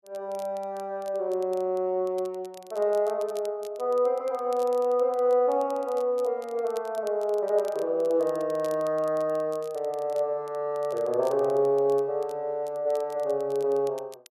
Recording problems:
crackling; vinyl, SNR 26 dB

